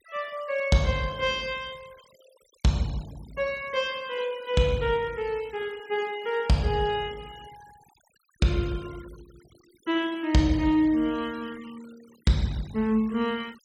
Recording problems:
denoising artefacts; signal-to-artefact ratio 23 dB

